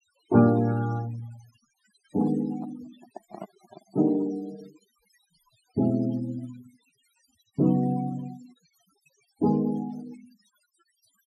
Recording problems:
denoising artefacts; signal-to-artefact ratio 20 dB
microphone handling noise; from 2 to 4.5 s; peak -8 dB vs average level

